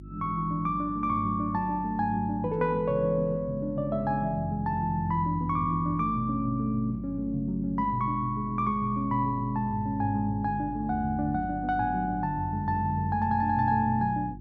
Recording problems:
mains hum; 50 Hz, harmonics up to 350 Hz, SNR 15 dB

